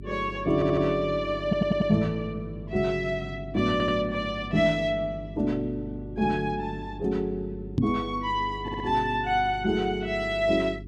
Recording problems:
electrical hum; 50 Hz, harmonics up to 400 Hz, SNR 14 dB
stutter; 4 times, first at 0.5 s
microphone bump; at 8 s; peak +5 dB vs average level

